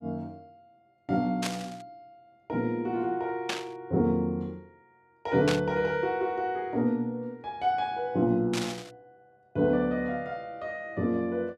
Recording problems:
static burst; 4 times, first at 1.5 s; peak +2 dB vs average level

